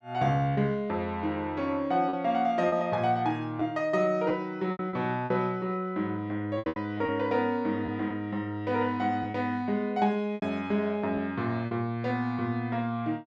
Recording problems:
lost packets; 6% of the sound replaced, filled with repeated pitch periods

